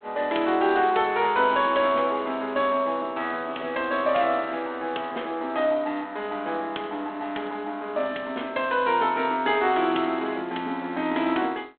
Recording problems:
telephone audio; 240 Hz to 3.8 kHz, G.726

